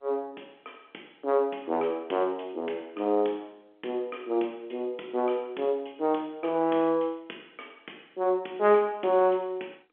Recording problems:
telephone audio; 260 Hz to 3.4 kHz, G.711

